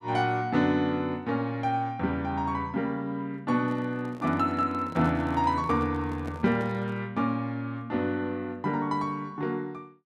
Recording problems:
microphone handling noise; from 3.5 to 7 s; peak -9 dB vs average level

